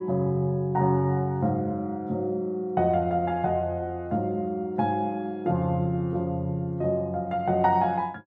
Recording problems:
none

